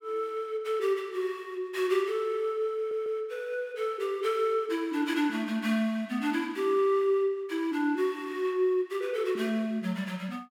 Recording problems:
audio stuttering; at 3 s

